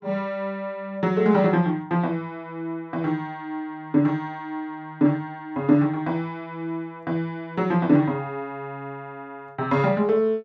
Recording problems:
none

